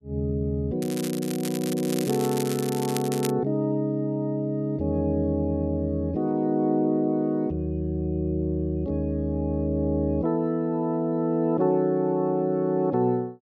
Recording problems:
crackling; from 1 to 3.5 s; loose cable, SNR 11 dB

